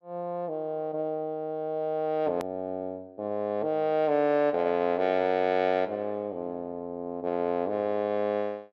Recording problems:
click at an edit; at 2.5 s

